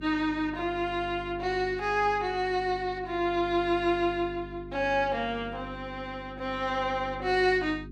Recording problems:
hum; 50 Hz, harmonics up to 400 Hz, SNR 15 dB

